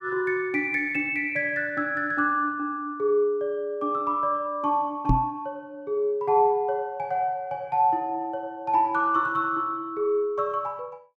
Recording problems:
microphone bump; at 5 s; peak +6 dB vs average level

